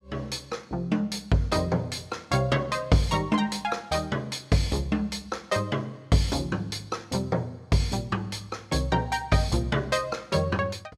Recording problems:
none

